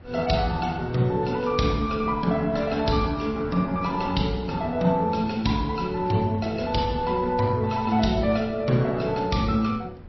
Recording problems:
codec artefacts; MP3, then MP3, log-spectral distance 2 dB, nothing above 5.7 kHz
wind on the microphone; below 260 Hz, SNR 18 dB

